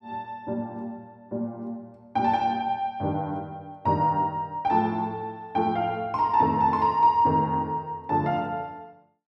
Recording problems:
none

